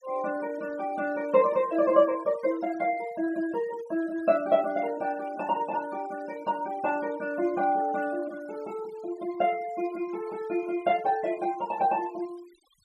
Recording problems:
denoising artefacts; signal-to-artefact ratio 21 dB

